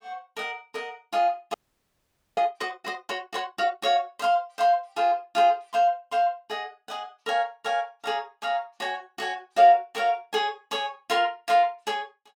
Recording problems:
audio freezing; at 1.5 s for 1 s

